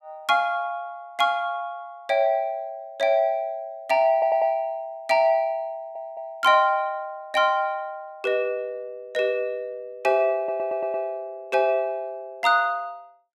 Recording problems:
stutter; at 4 s, at 5.5 s and at 10 s

